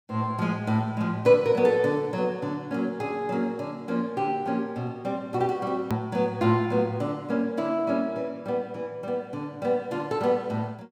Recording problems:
edit click; at 6 s

